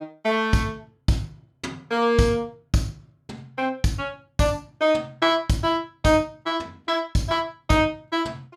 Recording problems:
none

